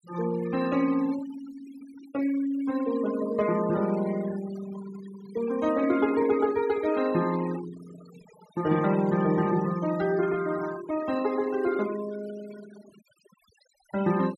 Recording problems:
denoising artefacts; signal-to-artefact ratio 17 dB

